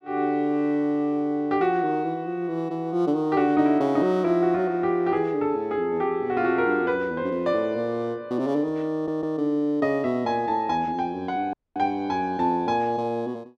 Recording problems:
stutter; at 9 s
audio cutting out; at 12 s

